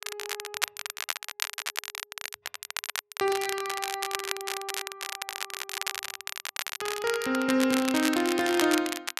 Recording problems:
crackling; vinyl, SNR 5 dB

